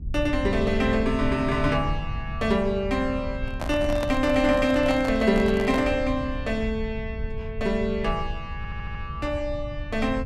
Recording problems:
rumble; below 90 Hz, SNR 9 dB
handling noise; from 3.5 to 6 s; peak -3 dB vs average level
audio stuttering; at 8.5 s

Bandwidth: 14 kHz